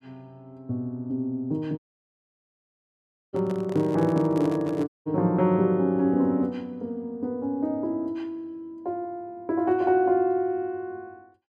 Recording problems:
dropout; at 2 s for 1.5 s and at 5 s
microphone handling noise; from 3.5 to 5 s; peak -7 dB vs average level

